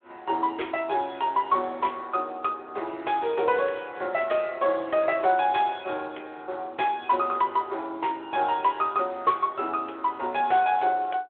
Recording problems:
telephone audio; 300 Hz to 3.7 kHz, Speex

